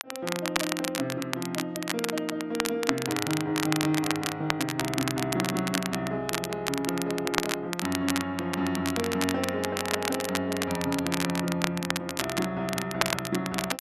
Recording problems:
crackling; vinyl, SNR 2 dB

